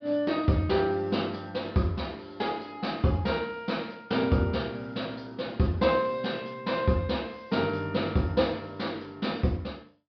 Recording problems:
treble missing; nothing above 5.5 kHz

